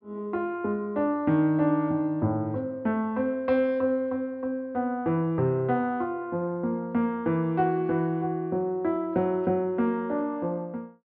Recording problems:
low-pass filter; nothing above 5.1 kHz

